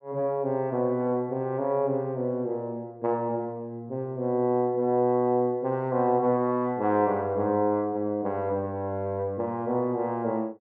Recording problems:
none

